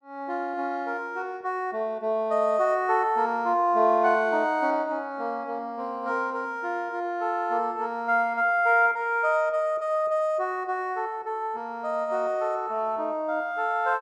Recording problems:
none

